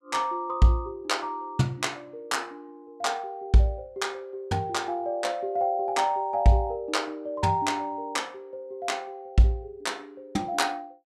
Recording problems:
none

